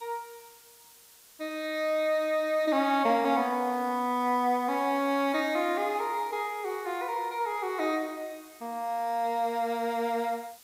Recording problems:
hiss; slope +1 dB per octave, SNR 23 dB

